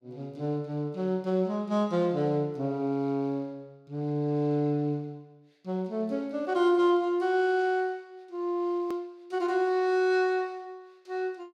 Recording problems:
click at an edit; at 9 s

